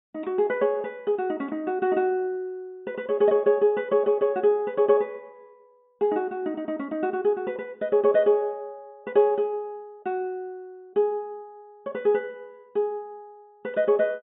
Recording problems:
treble missing; nothing above 4 kHz

